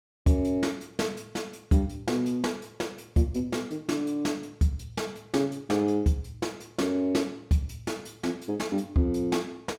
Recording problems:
none

